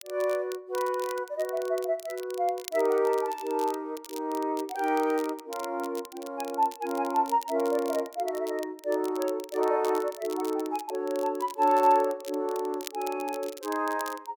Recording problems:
crackle; vinyl, SNR 17 dB

